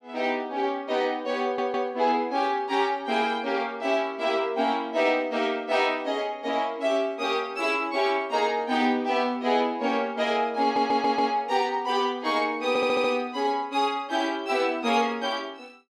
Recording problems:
audio stuttering; at 1.5 s, at 11 s and at 13 s

